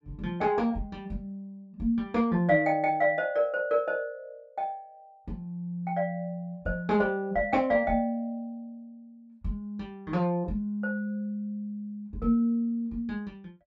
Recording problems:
none

